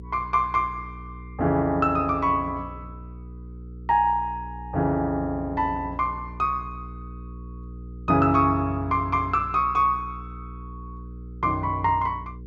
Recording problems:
hum; 60 Hz, harmonics up to 480 Hz, SNR 15 dB

